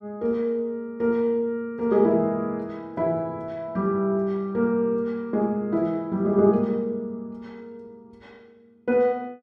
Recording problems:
none

